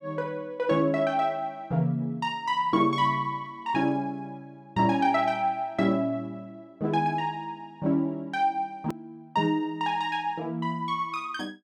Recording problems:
hard cut with a click; at 9 s

